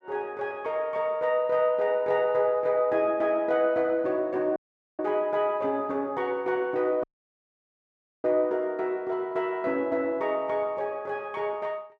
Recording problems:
dropout; at 4.5 s and at 7 s for 1 s

